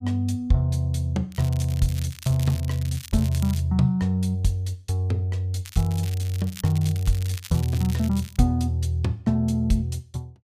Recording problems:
crackle; from 1.5 to 3.5 s and from 5.5 to 8.5 s; loose cable, SNR 17 dB

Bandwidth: 15 kHz